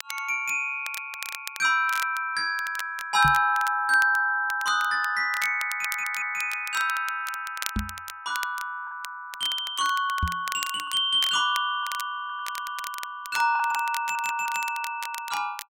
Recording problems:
crackling; vinyl, SNR 13 dB
packet loss; 1.7% of the sound replaced, filled with the last packet
audio stuttering; 4 times, first at 1 s
knock on the microphone; at 3.5 s, at 8 s and at 10 s; peak +1 dB vs average level

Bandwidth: 16 kHz